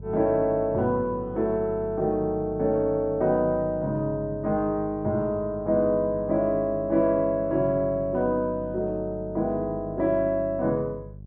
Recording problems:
hum; 50 Hz, harmonics up to 400 Hz, SNR 16 dB

